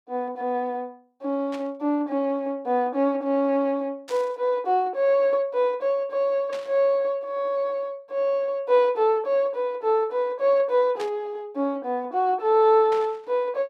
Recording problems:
burst of static; 5 times, first at 1.5 s; peak -11 dB vs average level

